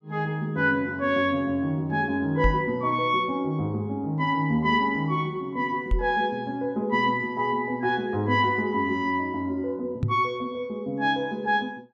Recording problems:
microphone bump; at 2.5 s, at 6 s and at 10 s; peak +4 dB vs average level

